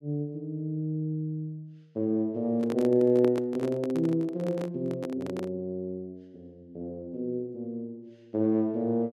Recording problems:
microphone handling noise; from 2.5 to 5.5 s; peak 0 dB vs average level

